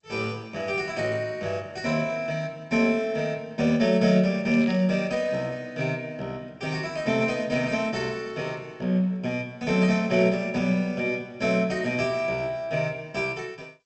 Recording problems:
lossy codec; G.722, log-spectral distance 2 dB, nothing above 8.2 kHz
crackling; at 4.5 s; loose cable, SNR 22 dB

